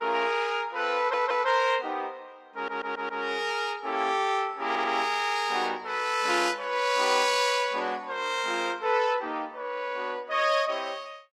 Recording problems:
lossy codec; Opus, log-spectral distance 3 dB, nothing above 16 kHz
stutter; at 1 s, at 2.5 s and at 4.5 s

